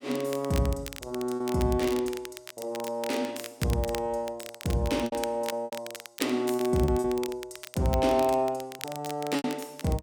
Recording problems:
crackle; vinyl, SNR 13 dB
packet loss; 6% of the sound replaced, filled with repeated pitch periods

